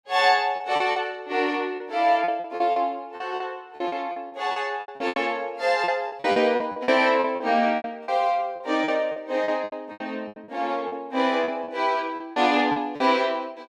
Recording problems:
lost packets; 15% of the sound replaced, filled with repeated pitch periods

